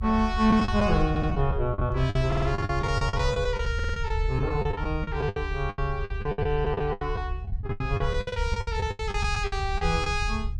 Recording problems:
low-frequency rumble; below 78 Hz, SNR 5 dB
packet loss; 17% of the sound replaced, filled with the last packet
audio stuttering; at 1 s, at 2.5 s and at 3.5 s

